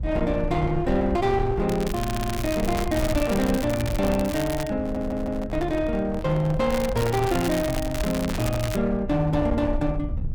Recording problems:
distorted audio; hard clipping, uneven, signal-to-distortion ratio 11 dB
rumble; below 98 Hz, SNR 8 dB
crackling; from 1.5 to 4.5 s and from 6.5 to 9 s; loose cable, SNR 11 dB
audio stuttering; at 2 s and at 5 s
handling noise; from 5 to 9 s; peak -6 dB vs average level

